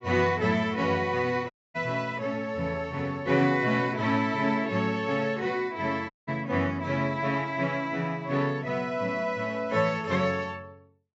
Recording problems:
treble cut off; nothing above 8 kHz
dropout; at 1.5 s and at 6 s

